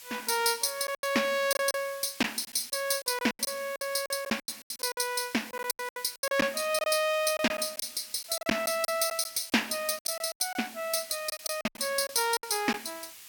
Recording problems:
background hiss; slope +3 dB per octave, SNR 16 dB
packet loss; 14% of the sound replaced, filled with silence

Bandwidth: 18 kHz